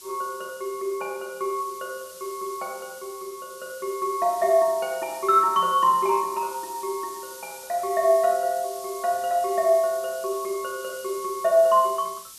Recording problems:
background hiss; SNR 17 dB

